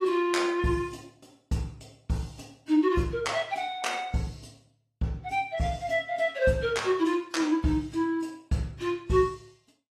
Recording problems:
lossy compression; AAC, log-spectral distance 2 dB, nothing above 12.7 kHz

